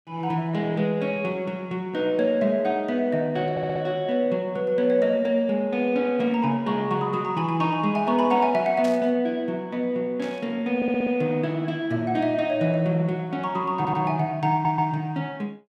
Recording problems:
audio stuttering; 4 times, first at 3.5 s
burst of static; at 9 s and at 10 s; peak -10 dB vs average level

